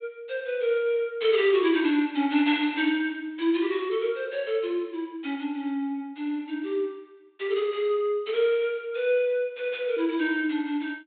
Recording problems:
treble cut off; nothing above 4 kHz

